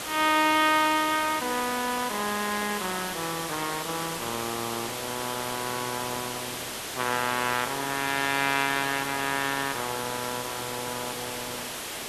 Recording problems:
background hiss; slope -2 dB per octave, SNR 5 dB

